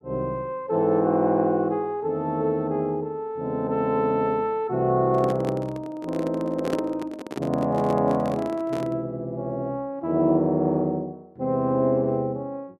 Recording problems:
microphone handling noise; from 5 to 9 s; peak 0 dB vs average level

